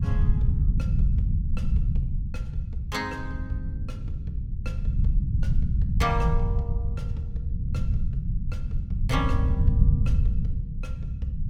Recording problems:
rumble; below 100 Hz, SNR -7 dB

